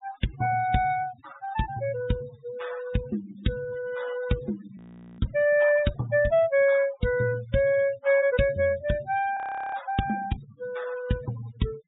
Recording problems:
treble missing; nothing above 4 kHz
noise reduction artefacts; signal-to-artefact ratio 18 dB
audio freezing; at 5 s and at 9.5 s

